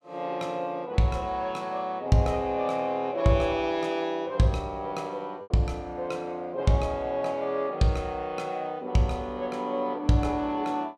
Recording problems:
lost packets; 0.7% of the sound replaced, filled with repeated pitch periods

